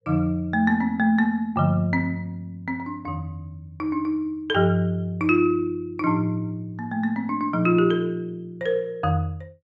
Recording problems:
none

